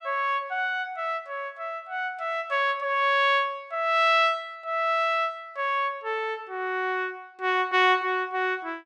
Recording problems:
none

